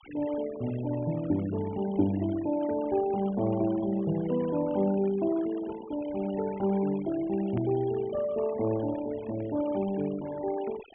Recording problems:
treble cut off; nothing above 3.3 kHz
noise reduction artefacts; signal-to-artefact ratio 18 dB
hard cut with a click; at 7.5 s

